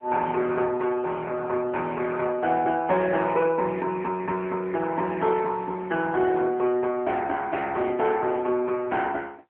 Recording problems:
phone line; 260 Hz to 3.4 kHz, AMR-NB

